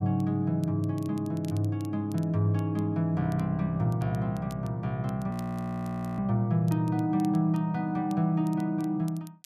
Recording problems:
crackling; vinyl, SNR 27 dB
frozen audio; at 5.5 s for 1 s

